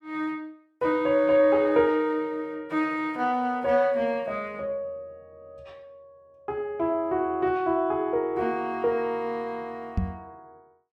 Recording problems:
microphone thump; at 10 s; peak +3 dB vs average level

